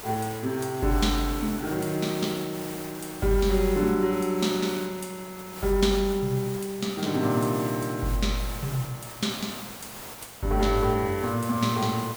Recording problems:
background hiss; slope -3 dB per octave, SNR 12 dB

